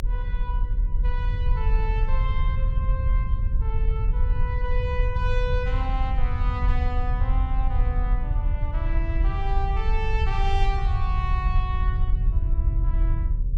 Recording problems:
hum; 60 Hz, harmonics up to 540 Hz, SNR 11 dB
low-frequency rumble; below 66 Hz, SNR -8 dB

